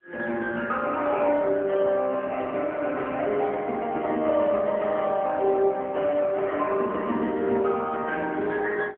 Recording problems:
telephone audio; 220 Hz to 3.3 kHz, AMR-NB

